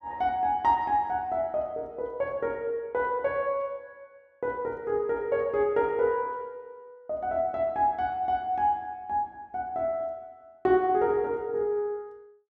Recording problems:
none

